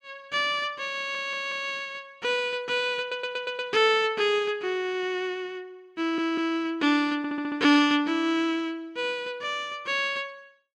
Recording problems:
audio stuttering; 4 times, first at 1 s

